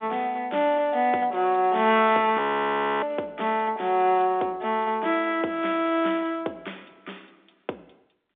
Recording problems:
telephone audio; 260 Hz to 3.6 kHz, G.711
audio freezing; at 2.5 s for 0.5 s

